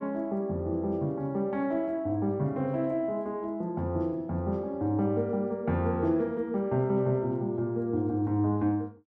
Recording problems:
none

